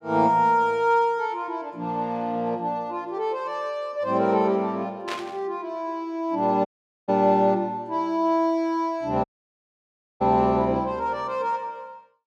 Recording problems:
burst of static; at 5 s; peak -4 dB vs average level
audio cutting out; at 6.5 s and at 9 s for 1 s

